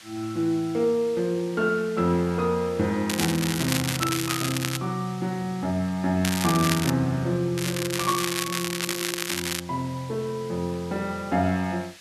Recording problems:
hiss; SNR 19 dB
crackle; from 3 to 5 s, at 6.5 s and from 7.5 to 9.5 s; loose cable, SNR 3 dB

